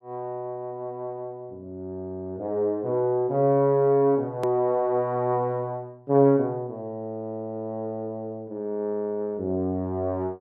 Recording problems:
click at an edit; at 4.5 s

